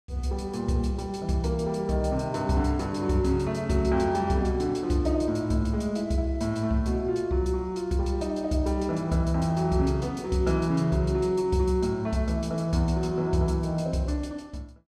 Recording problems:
none

